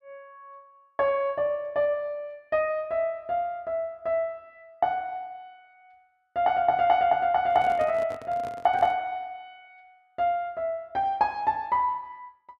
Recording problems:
handling noise; from 7.5 to 9 s; peak -9 dB vs average level

